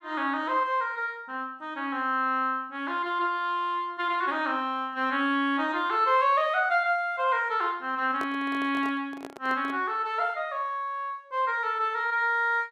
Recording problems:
handling noise; from 8 to 10 s; peak -7 dB vs average level

